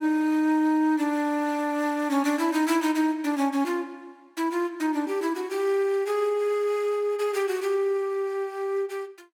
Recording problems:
none

